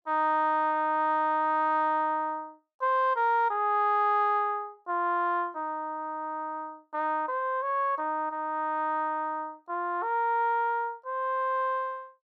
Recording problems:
none

